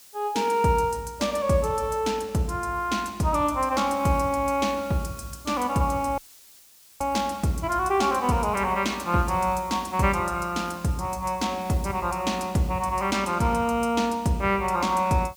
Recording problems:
background hiss; slope +2 dB per octave, SNR 23 dB
dropout; at 6 s for 1 s

